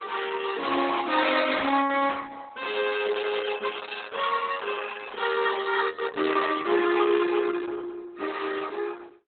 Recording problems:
lossy compression; Opus, log-spectral distance 6 dB, nothing above 4 kHz

